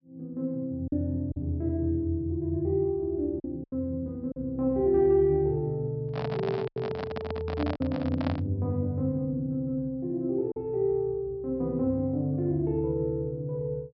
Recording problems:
treble cut off; nothing above 5.5 kHz
lost packets; 3% of the sound replaced, filled with silence
handling noise; from 6 to 8.5 s; peak -1 dB vs average level

